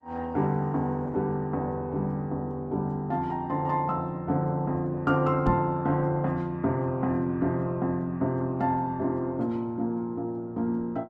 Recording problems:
codec artefacts; Opus, log-spectral distance 2 dB
microphone bump; at 5.5 s; peak +4 dB vs average level

